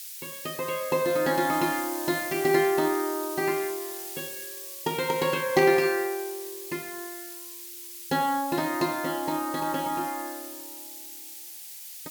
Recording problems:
background hiss; slope +7 dB per octave, SNR 10 dB
burst of static; at 5.5 s; peak -5 dB vs average level

